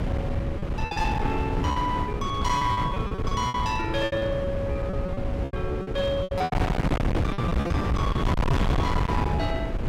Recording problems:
distortion; hard clipping, signal-to-distortion ratio 6 dB
hum; 60 Hz, harmonics up to 540 Hz, SNR 9 dB
wind noise; below 320 Hz, SNR -1 dB
packet loss; 12% of the sound replaced, filled with repeated pitch periods

